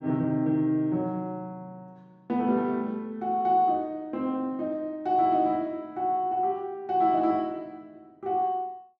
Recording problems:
none

